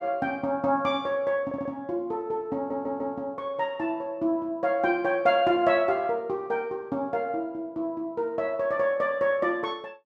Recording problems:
stutter; at 1.5 s and at 2.5 s

